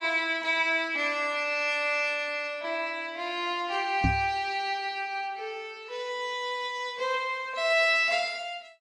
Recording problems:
codec artefacts; AAC, log-spectral distance 2 dB
microphone bump; at 4 s; peak +5 dB vs average level

